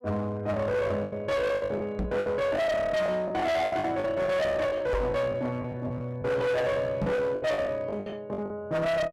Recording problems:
distorted audio; hard clipping, uneven, signal-to-distortion ratio 6 dB
lost packets; 12% of the sound replaced, filled with the last packet
microphone bump; at 2 s, at 5 s and at 7 s; peak +3 dB vs average level

